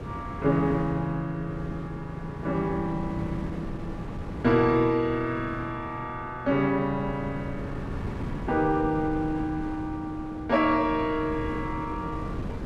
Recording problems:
wind noise; below 330 Hz, SNR 9 dB

